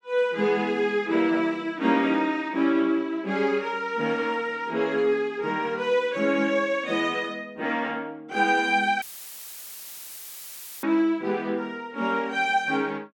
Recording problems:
audio cutting out; at 9 s for 2 s; filled with static

